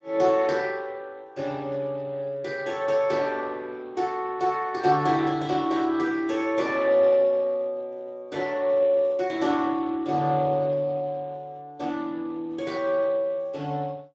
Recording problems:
lossy compression; Speex, log-spectral distance 3 dB

